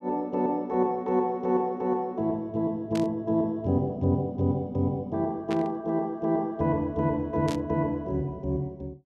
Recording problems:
static burst; at 3 s, at 5.5 s and at 7.5 s; peak -7 dB vs average level

